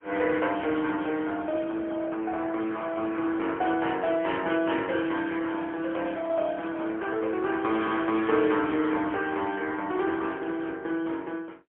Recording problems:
telephone audio; 220 Hz to 3.3 kHz, AMR-NB, then MP3
crackle; from 5 to 7 s and at 10 s; loose cable, SNR 27 dB

